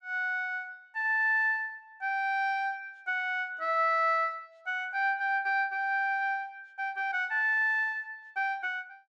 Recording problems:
none

